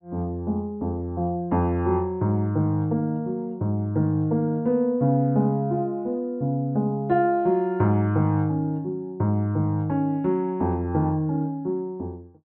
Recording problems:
treble missing; nothing above 4.3 kHz

